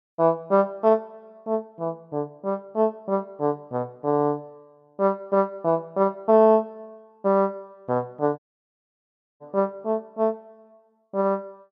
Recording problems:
audio cutting out; at 8.5 s for 1 s

